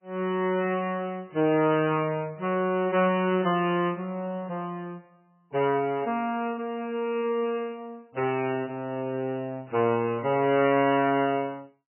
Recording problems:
lossy codec; MP3, log-spectral distance 3 dB, nothing above 3 kHz

